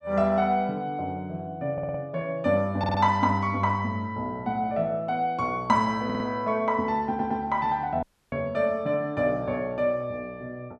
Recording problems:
audio stuttering; 4 times, first at 1.5 s
audio cutting out; at 8 s

